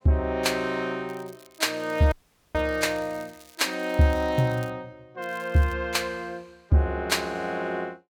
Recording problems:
crackling; from 1 to 4.5 s and at 5 s; loose cable, SNR 26 dB
dropout; at 2 s

